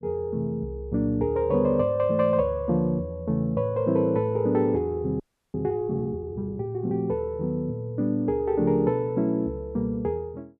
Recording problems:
frozen audio; at 5 s

